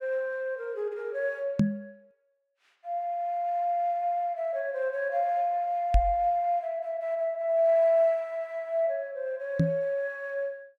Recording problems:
knock on the microphone; at 1.5 s, at 6 s and at 9.5 s; peak +8 dB vs average level

